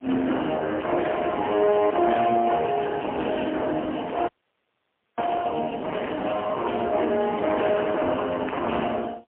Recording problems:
phone line; 240 Hz to 3.2 kHz, AMR-NB, then MP3
distortion; soft clipping, signal-to-distortion ratio 12 dB
frozen audio; at 4.5 s for 1 s

